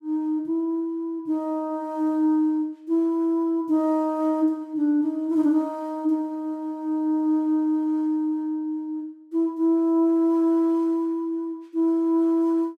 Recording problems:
none

